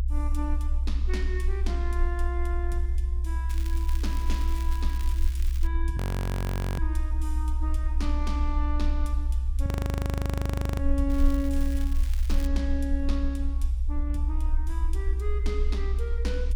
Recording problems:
rumble; below 64 Hz, strongest tone 26 Hz, SNR -8 dB
crackling; from 3.5 to 5.5 s and from 11 to 12 s; loose cable, SNR 10 dB
frozen audio; at 6 s for 1 s and at 9.5 s for 1 s

